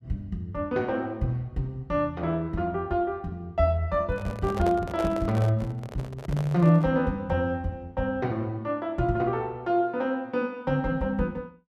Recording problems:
handling noise; from 4 to 7 s; peak -2 dB vs average level

